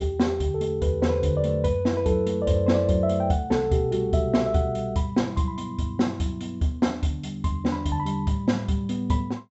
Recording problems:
low-pass filter; nothing above 7.7 kHz

